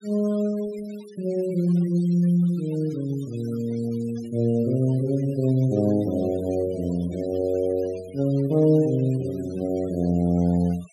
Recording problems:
denoising artefacts; signal-to-artefact ratio 24 dB

